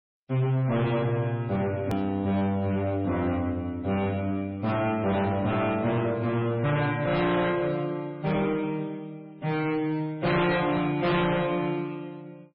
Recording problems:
lossy codec; MP3, log-spectral distance 2 dB, nothing above 18.9 kHz
distortion; hard clipping, signal-to-distortion ratio 7 dB
hard cut with a click; at 2 s

